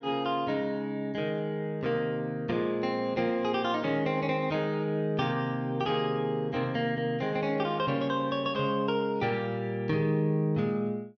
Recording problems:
treble cut off; nothing above 6.5 kHz

